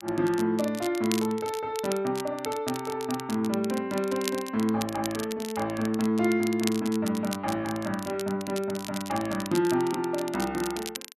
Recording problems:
crackling; vinyl, SNR 11 dB

